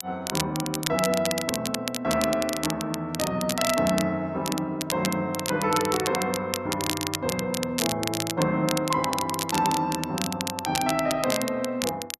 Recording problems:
crackling; vinyl, SNR 5 dB

